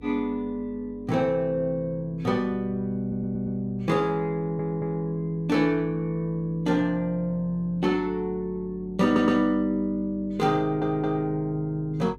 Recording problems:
hum; 50 Hz, harmonics up to 500 Hz, SNR 21 dB
audio stuttering; 4 times, first at 3 s

